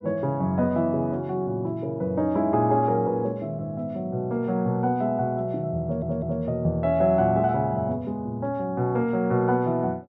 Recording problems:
audio stuttering; at 6 s

